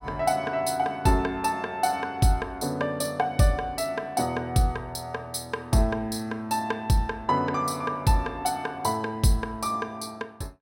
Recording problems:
none

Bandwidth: 16.5 kHz